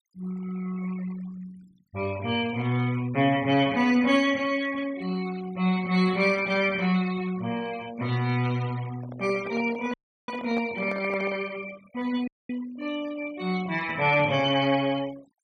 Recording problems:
noise reduction artefacts; signal-to-artefact ratio 19 dB
microphone handling noise; from 9 to 11 s; peak -7 dB vs average level
audio cutting out; at 10 s and at 12 s

